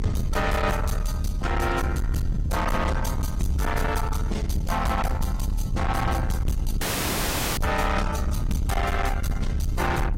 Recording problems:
codec artefacts; AAC, log-spectral distance 2 dB, nothing above 16 kHz
distorted audio; soft clipping, signal-to-distortion ratio 8 dB
rumble; below 130 Hz, SNR 1 dB
dropout; at 7 s for 1 s

